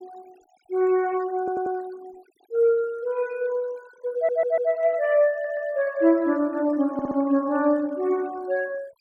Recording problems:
denoising artefacts; signal-to-artefact ratio 26 dB
audio stuttering; 4 times, first at 1.5 s

